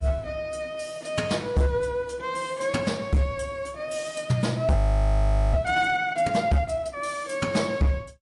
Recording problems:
lossy compression; MP3, log-spectral distance 2 dB
distortion; hard clipping, signal-to-distortion ratio 11 dB
audio freezing; at 5 s for 1 s

